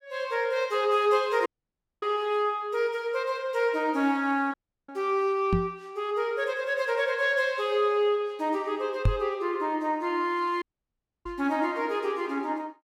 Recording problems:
audio cutting out; at 1.5 s for 0.5 s, at 4.5 s and at 11 s for 0.5 s
knock on the microphone; at 5.5 s, at 9 s and at 11 s; peak +7 dB vs average level

